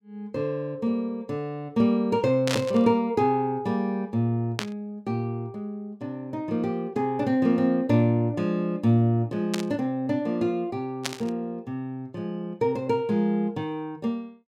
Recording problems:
burst of static; 4 times, first at 2.5 s; peak +2 dB vs average level

